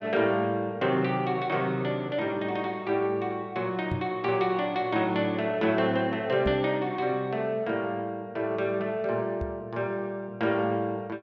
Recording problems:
microphone thump; at 4 s, at 6.5 s and at 9.5 s; peak -1 dB vs average level

